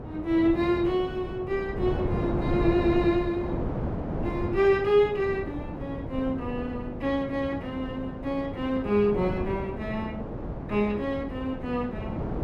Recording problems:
wind on the microphone; below 440 Hz, SNR 6 dB

